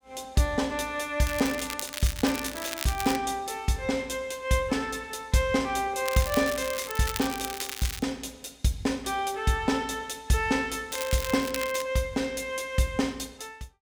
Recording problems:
crackling; from 1.5 to 3 s, from 6 to 8 s and at 11 s; loose cable, SNR 7 dB

